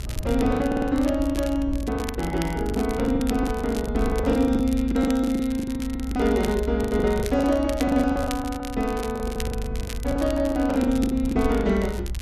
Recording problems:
low-frequency rumble; below 76 Hz, SNR 9 dB
crackling; vinyl, SNR 17 dB
lost packets; 19% of the sound replaced, filled with the last packet
stutter; at 0.5 s

